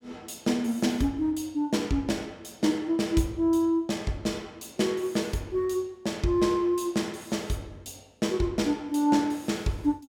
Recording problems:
none

